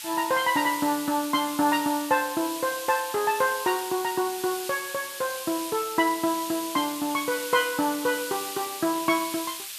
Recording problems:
hiss; SNR 8 dB

